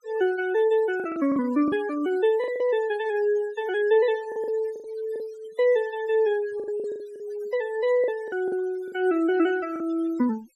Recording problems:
denoising artefacts; signal-to-artefact ratio 21 dB
lost packets; 8% of the sound replaced, filled with the last packet

